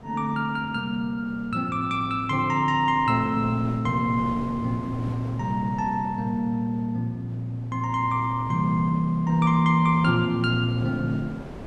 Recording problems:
wind noise; below 560 Hz, SNR 17 dB

